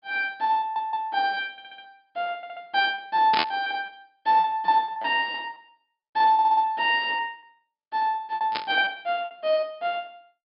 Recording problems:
treble missing; nothing above 5.5 kHz
lost packets; 13% of the sound replaced, filled with repeated pitch periods
audio stuttering; 4 times, first at 0.5 s
burst of static; at 3.5 s and at 8.5 s; peak +5 dB vs average level

